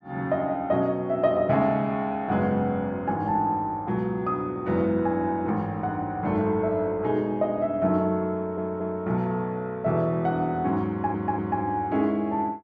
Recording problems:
stutter; at 8.5 s and at 11 s

